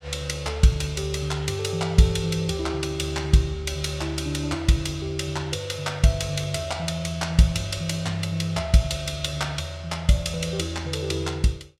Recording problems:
none

